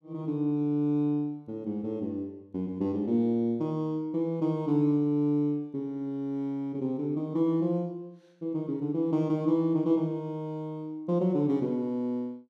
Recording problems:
none

